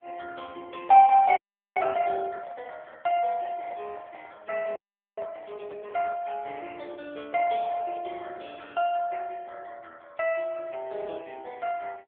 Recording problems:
phone line; 320 Hz to 3.4 kHz, AMR-NB
frozen audio; at 1.5 s and at 5 s
handling noise; from 2.5 to 6 s; peak -13 dB vs average level

